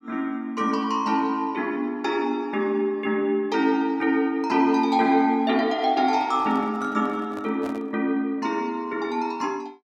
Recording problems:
handling noise; from 6 to 8 s; peak -10 dB vs average level

